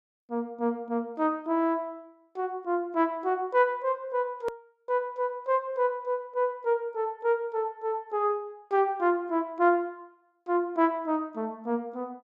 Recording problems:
click at an edit; at 4.5 s

